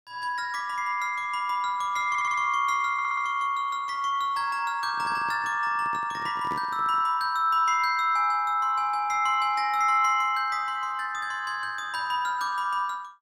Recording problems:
audio stuttering; at 2 s and at 3 s
handling noise; from 5 to 7 s; peak -9 dB vs average level

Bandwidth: 17.5 kHz